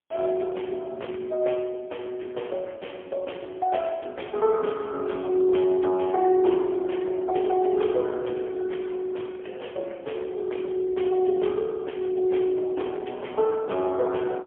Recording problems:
phone line; 300 Hz to 3.3 kHz, AMR-NB, then MP3

